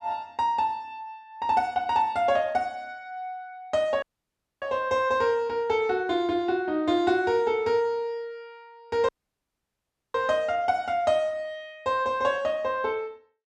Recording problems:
dropout; at 4 s for 0.5 s and at 9 s for 1 s

